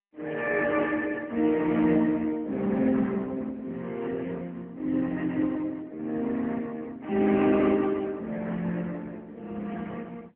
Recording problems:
phone line; 190 Hz to 3.4 kHz, AMR-NB

